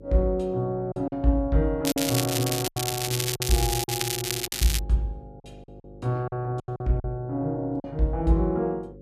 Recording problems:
electrical hum; 50 Hz, harmonics up to 550 Hz, SNR 19 dB
lost packets; 7% of the sound replaced, filled with silence
crackling; from 2 to 5 s; loose cable, SNR 1 dB

